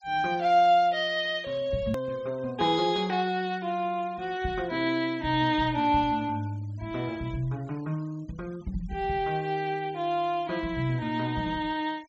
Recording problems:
treble missing; nothing above 8 kHz
noise reduction artefacts; signal-to-artefact ratio 27 dB
edit click; at 2 s

